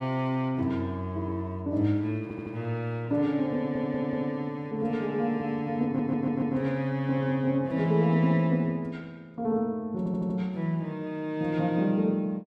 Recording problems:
audio stuttering; 4 times, first at 2 s

